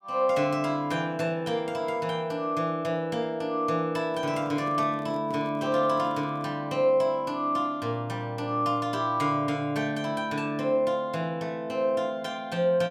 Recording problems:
handling noise; from 4 to 6.5 s; peak -11 dB vs average level

